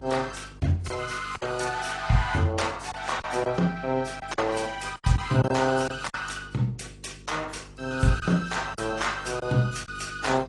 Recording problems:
lossy codec; Opus, then AAC, log-spectral distance 5 dB, nothing above 10.4 kHz
electrical hum; 50 Hz, harmonics up to 500 Hz, SNR 20 dB
lost packets; 6% of the sound replaced, filled with silence

